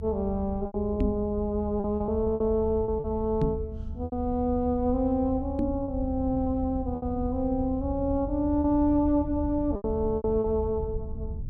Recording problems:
rumble; below 82 Hz, SNR 9 dB
packet loss; 7% of the sound replaced, filled with repeated pitch periods
microphone thump; at 1 s, at 3.5 s and at 5.5 s; peak +4 dB vs average level

